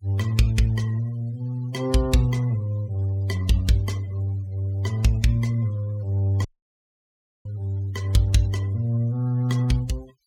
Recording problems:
noise reduction artefacts; signal-to-artefact ratio 24 dB
audio cutting out; at 6.5 s for 1 s

